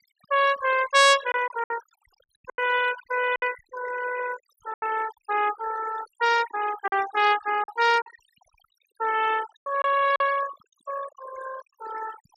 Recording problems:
noise reduction artefacts; signal-to-artefact ratio 12 dB
packet loss; 6% of the sound replaced, filled with silence

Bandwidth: 15 kHz